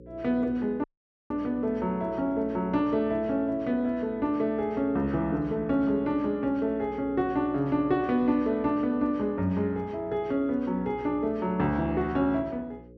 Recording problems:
hum; 60 Hz, harmonics up to 540 Hz, SNR 19 dB
dropout; at 1 s

